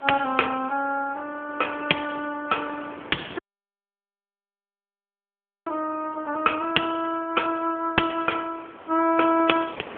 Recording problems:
phone line; 280 Hz to 3.3 kHz, AMR-NB
wind on the microphone; below 1.6 kHz, SNR 18 dB
dropout; at 3.5 s for 2.5 s

